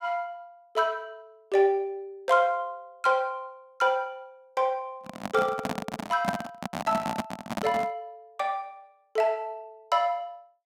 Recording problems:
handling noise; from 5 to 8 s; peak +3 dB vs average level

